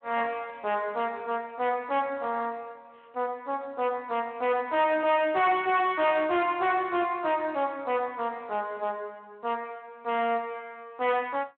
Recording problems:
phone line; 260 Hz to 3.3 kHz, Speex
distortion; hard clipping, signal-to-distortion ratio 7 dB

